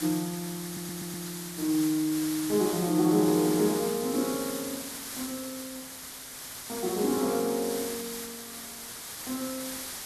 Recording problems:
background hiss; SNR 7 dB
stutter; at 0.5 s

